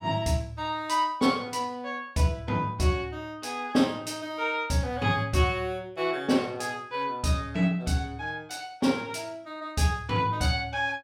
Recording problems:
none

